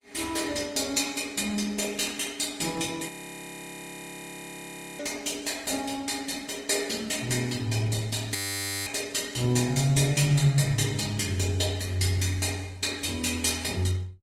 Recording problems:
codec artefacts; Opus, log-spectral distance 5 dB, nothing above 18.9 kHz
audio freezing; at 3 s for 2 s and at 8.5 s for 0.5 s

